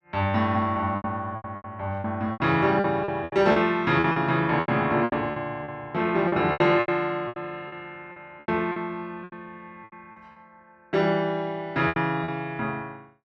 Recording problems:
packet loss; 14% of the sound replaced, filled with repeated pitch periods

